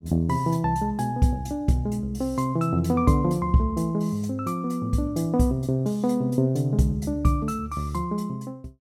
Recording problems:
none

